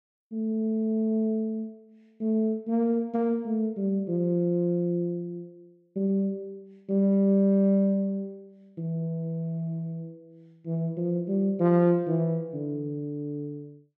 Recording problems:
none

